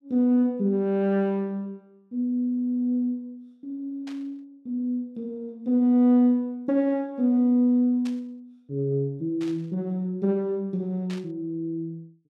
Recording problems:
burst of static; 4 times, first at 4 s; peak -13 dB vs average level

